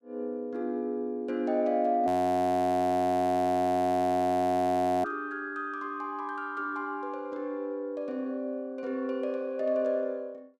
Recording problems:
frozen audio; at 2 s for 3 s

